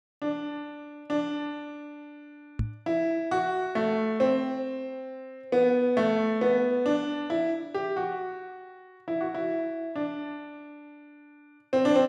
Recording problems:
microphone bump; at 2.5 s; peak +2 dB vs average level

